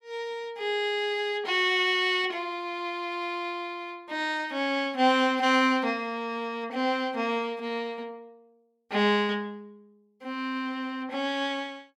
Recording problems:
none

